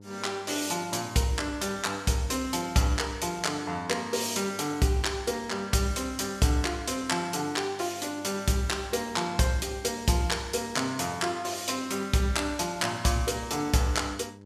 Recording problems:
hum; 50 Hz, harmonics up to 1 kHz, SNR 21 dB

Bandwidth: 15 kHz